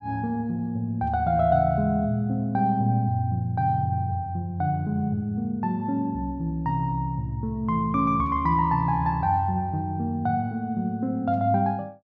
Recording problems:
none

